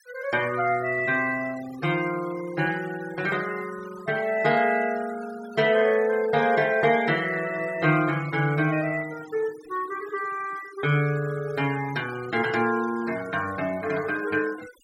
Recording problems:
noise reduction artefacts; signal-to-artefact ratio 18 dB

